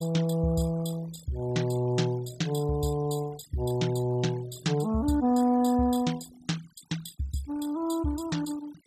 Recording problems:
noise reduction artefacts; signal-to-artefact ratio 18 dB

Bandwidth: 14 kHz